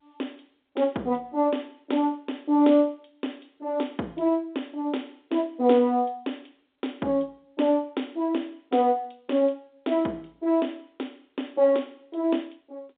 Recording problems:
phone line; 170 Hz to 3.7 kHz, G.711

